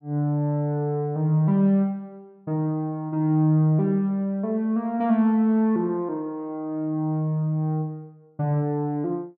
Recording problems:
none

